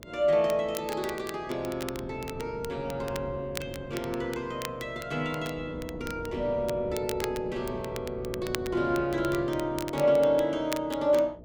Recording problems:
electrical hum; 60 Hz, harmonics up to 660 Hz, SNR 22 dB
wind noise; below 350 Hz, SNR 15 dB
crackle; vinyl, SNR 14 dB

